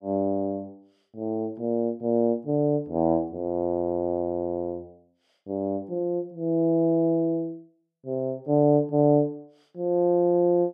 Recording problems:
none

